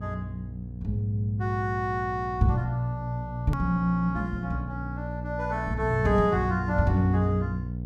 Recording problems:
hum; 60 Hz, harmonics up to 540 Hz, SNR 8 dB
edit click; at 3.5 s

